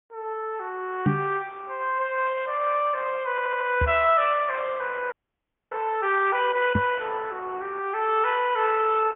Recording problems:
treble cut off; nothing above 3 kHz
lossy codec; Opus, log-spectral distance 3 dB
knock on the microphone; at 1 s, at 4 s and at 7 s; peak +7 dB vs average level
stutter; at 3.5 s
frozen audio; at 5 s for 0.5 s

